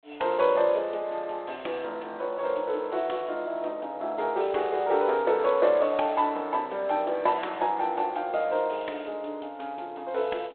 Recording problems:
telephone audio; 320 Hz to 3.6 kHz, G.726

